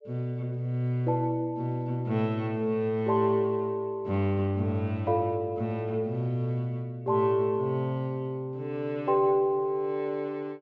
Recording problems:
treble missing; nothing above 8 kHz

